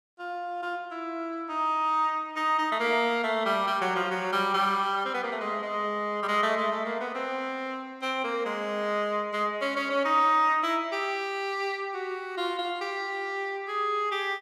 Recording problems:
none

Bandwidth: 15 kHz